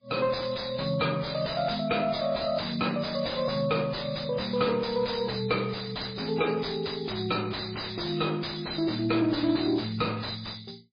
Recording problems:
lossy compression; MP3, log-spectral distance 11 dB
distorted audio; soft clipping, signal-to-distortion ratio 6 dB

